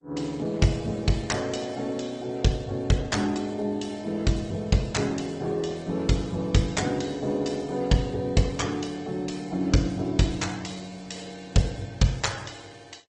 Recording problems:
lossy compression; MP2, then Opus, log-spectral distance 5 dB, nothing above 8 kHz

